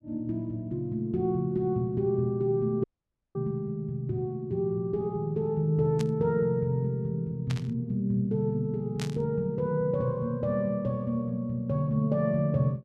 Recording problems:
audio cutting out; at 3 s for 0.5 s
static burst; at 6 s, at 7.5 s and at 9 s; peak -5 dB vs average level

